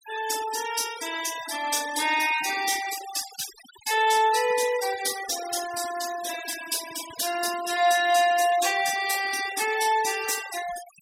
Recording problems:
denoising artefacts; signal-to-artefact ratio 11 dB

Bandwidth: 16 kHz